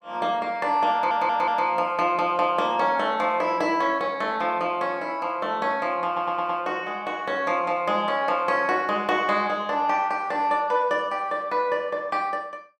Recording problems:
audio stuttering; at 1 s and at 6 s

